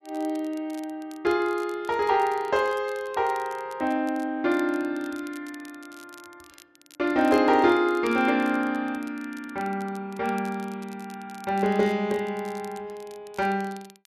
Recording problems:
crackle; vinyl, SNR 25 dB

